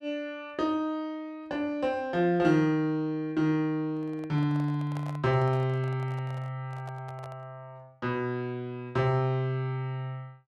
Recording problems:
handling noise; from 4 to 7.5 s; peak -10 dB vs average level

